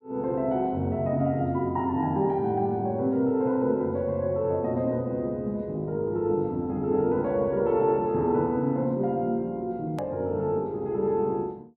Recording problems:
hard cut with a click; at 10 s

